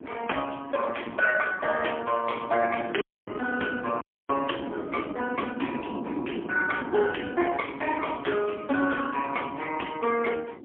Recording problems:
phone line; 240 Hz to 3.3 kHz, AMR-NB, then MP3
wind on the microphone; below 400 Hz, SNR 9 dB
audio cutting out; at 3 s and at 4 s

